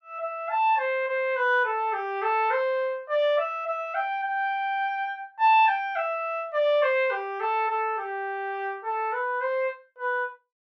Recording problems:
none

